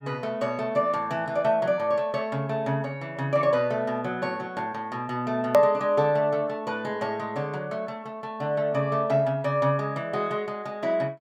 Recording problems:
edit click; at 5.5 s

